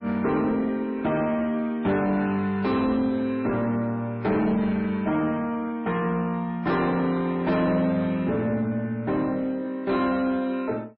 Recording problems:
lossy codec; MP3, log-spectral distance 2 dB, nothing above 5.3 kHz
distorted audio; soft clipping, signal-to-distortion ratio 11 dB

